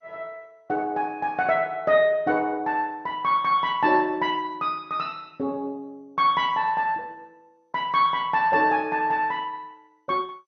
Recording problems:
lossy compression; MP2, log-spectral distance 2 dB, nothing above 6 kHz

